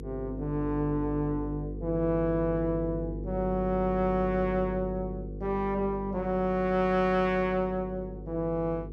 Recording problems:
hum; 50 Hz, harmonics up to 500 Hz, SNR 9 dB

